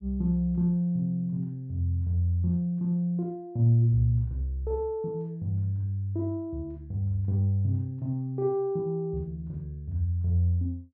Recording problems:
none

